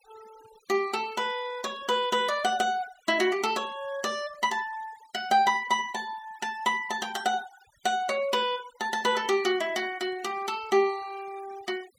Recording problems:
denoising artefacts; signal-to-artefact ratio 20 dB

